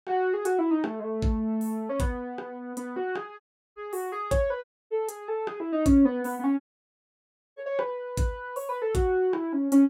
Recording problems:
dropout; at 3.5 s, at 4.5 s and at 6.5 s for 1 s

